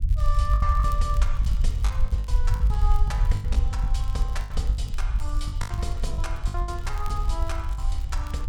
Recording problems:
low-frequency rumble; below 62 Hz, SNR -8 dB
crackle; vinyl, SNR 18 dB
lost packets; 15% of the sound replaced, filled with the last packet

